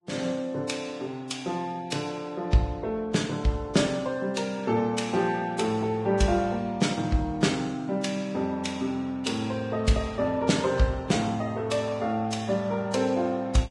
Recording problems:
codec artefacts; Vorbis, log-spectral distance 3 dB, nothing above 10.1 kHz

